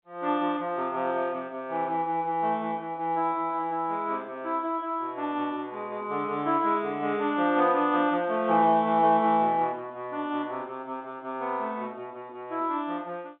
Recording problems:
phone line; 190 Hz to 3.6 kHz, G.711

